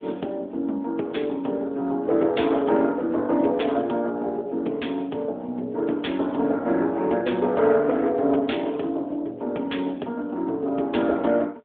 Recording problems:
telephone audio; 220 Hz to 3.6 kHz, AMR-NB

